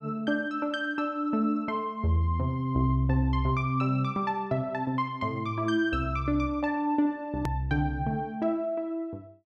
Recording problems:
hard cut with a click; at 7.5 s

